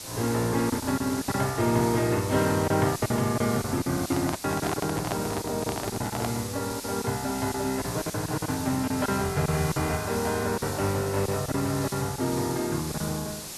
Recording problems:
lossy compression; Opus, log-spectral distance 2 dB
hiss; SNR 9 dB
lost packets; 9% of the sound replaced, filled with silence
microphone handling noise; from 4 to 6.5 s; peak +1 dB vs average level

